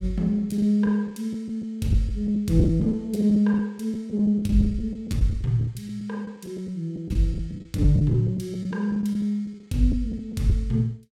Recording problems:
lost packets; 10% of the sound replaced, filled with the last packet

